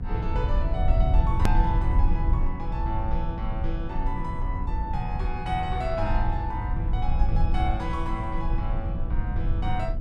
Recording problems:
hum; 60 Hz, harmonics up to 1 kHz, SNR 8 dB
low-frequency rumble; below 70 Hz, SNR -4 dB
hard cut with a click; at 1.5 s

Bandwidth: 12.5 kHz